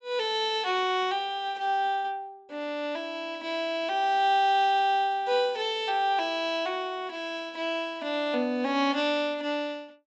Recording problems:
treble missing; nothing above 8 kHz

